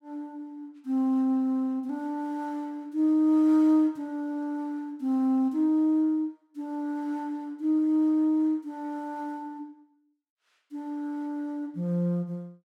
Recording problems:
none

